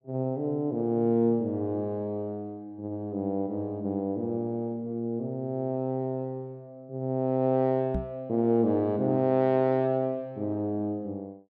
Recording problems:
knock on the microphone; at 8 s; peak 0 dB vs average level

